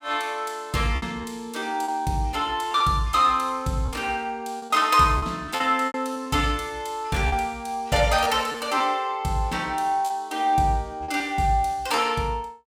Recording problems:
lost packets; 7% of the sound replaced, filled with repeated pitch periods

